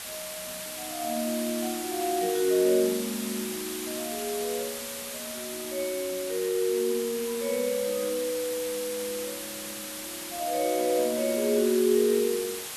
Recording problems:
hiss; slope 0 dB per octave, SNR 7 dB

